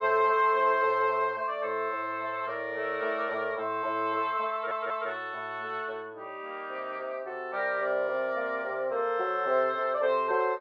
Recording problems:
audio stuttering; at 4.5 s

